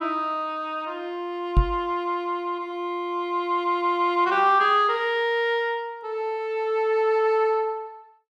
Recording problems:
microphone thump; at 1.5 s; peak +8 dB vs average level

